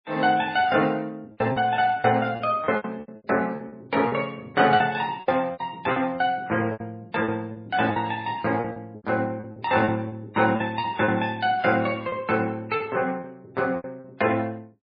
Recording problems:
lossy codec; MP3, log-spectral distance 2 dB, nothing above 4.5 kHz
packet loss; 13% of the sound replaced, filled with repeated pitch periods

